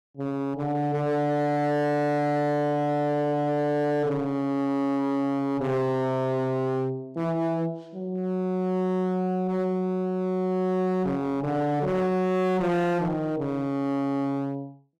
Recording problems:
distorted audio; hard clipping, signal-to-distortion ratio 7 dB

